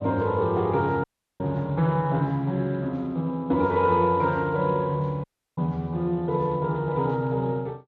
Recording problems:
codec artefacts; Speex, log-spectral distance 2 dB
audio cutting out; at 1 s and at 5 s

